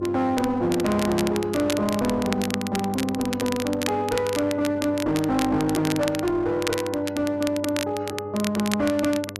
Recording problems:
distorted audio; hard clipping, uneven, signal-to-distortion ratio 10 dB
hum; 50 Hz, harmonics up to 1.1 kHz, SNR 14 dB
crackle; vinyl, SNR 9 dB

